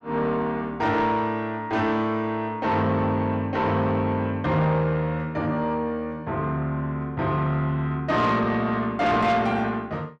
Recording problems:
distortion; soft clipping, signal-to-distortion ratio 11 dB

